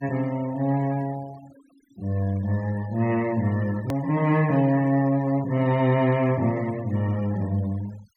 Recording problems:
denoising artefacts; signal-to-artefact ratio 22 dB
hard cut with a click; at 4 s

